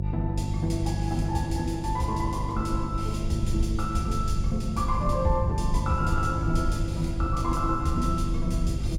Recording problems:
hum; 50 Hz, harmonics up to 550 Hz, SNR 3 dB
low-frequency rumble; below 62 Hz, SNR 5 dB

